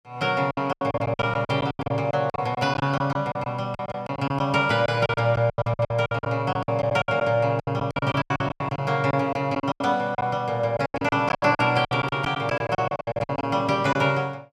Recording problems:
packet loss; 19% of the sound replaced, filled with silence

